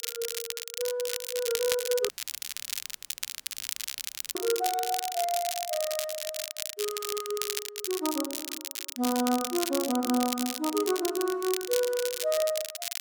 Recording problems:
crackle; vinyl, SNR 3 dB
audio cutting out; at 2 s for 2.5 s

